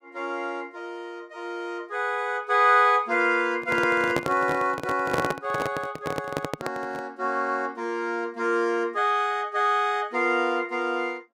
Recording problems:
microphone handling noise; from 3.5 to 7 s; peak +2 dB vs average level

